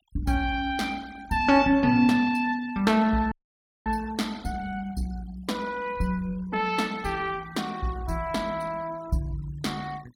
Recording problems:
noise reduction artefacts; signal-to-artefact ratio 23 dB
audio cutting out; at 3.5 s for 0.5 s

